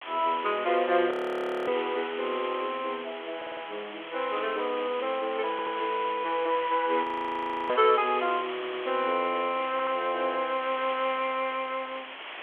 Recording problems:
phone line; 220 Hz to 3.4 kHz, G.726
hiss; SNR 11 dB
frozen audio; at 1 s for 0.5 s and at 7 s for 0.5 s
audio stuttering; 4 times, first at 3.5 s

